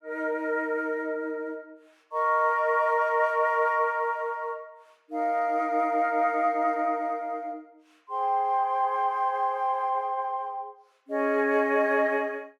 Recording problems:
none

